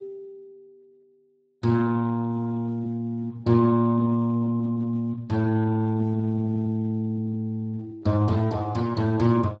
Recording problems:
codec artefacts; Speex, log-spectral distance 2 dB, nothing above 16 kHz

